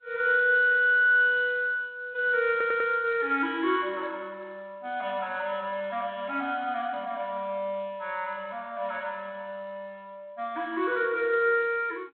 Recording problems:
telephone audio; 300 Hz to 3.9 kHz, G.726
audio stuttering; at 2.5 s

